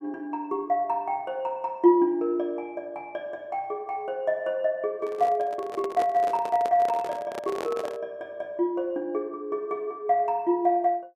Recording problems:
microphone handling noise; from 5 to 8 s; peak -2 dB vs average level

